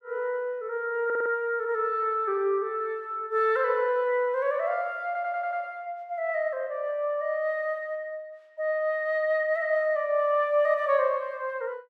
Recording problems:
stutter; at 1 s and at 5 s

